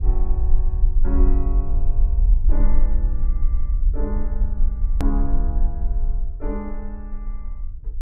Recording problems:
rumble; below 44 Hz, strongest tone 18 Hz, SNR -10 dB
hard cut with a click; at 5 s

